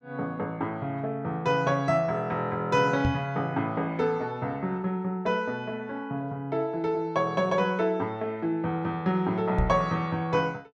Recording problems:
microphone thump; at 3 s and at 9.5 s; peak +5 dB vs average level

